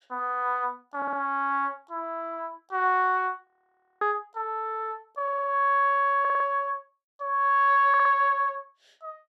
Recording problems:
audio stuttering; 4 times, first at 1 s
frozen audio; at 3.5 s for 0.5 s

